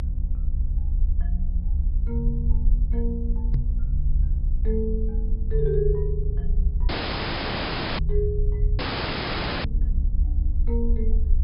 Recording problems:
low-pass filter; nothing above 5.5 kHz
electrical hum; 60 Hz, harmonics up to 540 Hz, SNR 8 dB
rumble; below 68 Hz, SNR -6 dB
knock on the microphone; at 3.5 s; peak +10 dB vs average level
dropout; at 7 s for 1 s and at 9 s for 1 s

